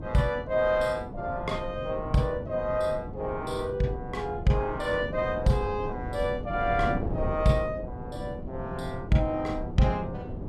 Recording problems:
wind noise; below 290 Hz, SNR 8 dB

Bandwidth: 14 kHz